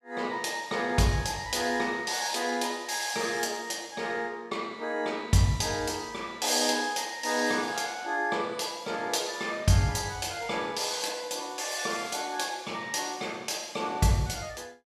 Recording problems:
none

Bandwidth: 14.5 kHz